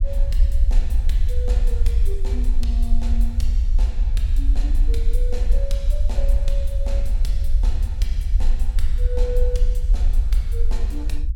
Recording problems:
rumble; below 50 Hz, SNR -11 dB

